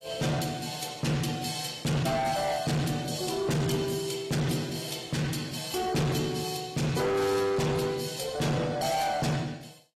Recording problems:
codec artefacts; AAC, log-spectral distance 5 dB
distortion; soft clipping, signal-to-distortion ratio 7 dB

